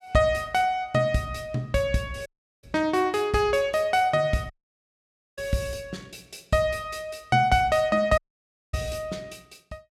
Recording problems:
audio cutting out; at 2.5 s, at 4.5 s for 1 s and at 8 s for 0.5 s

